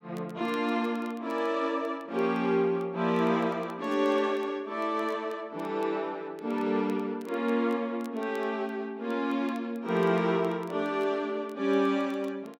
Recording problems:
crackle; vinyl, SNR 30 dB

